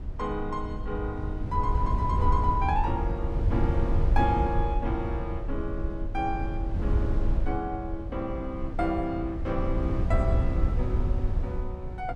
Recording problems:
low-frequency rumble; below 92 Hz, SNR -1 dB

